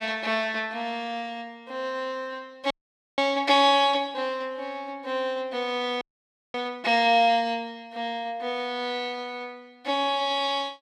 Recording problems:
audio freezing; at 2.5 s and at 6 s for 0.5 s

